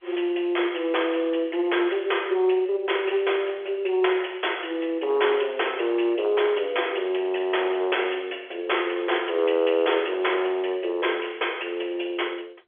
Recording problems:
phone line; 320 Hz to 3.4 kHz, G.711
distorted audio; soft clipping, signal-to-distortion ratio 14 dB

